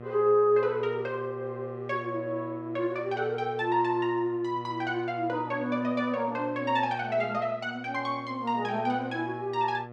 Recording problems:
hum; 60 Hz, harmonics up to 1.4 kHz, SNR 13 dB

